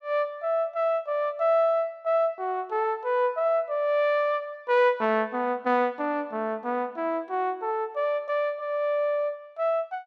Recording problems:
none

